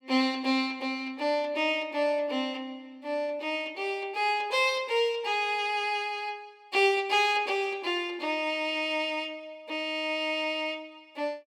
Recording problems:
none

